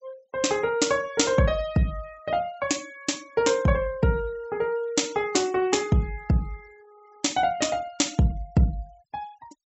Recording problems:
low-pass filter; nothing above 7.8 kHz
denoising artefacts; signal-to-artefact ratio 24 dB

